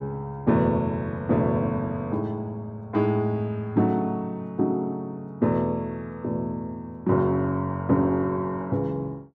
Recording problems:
none

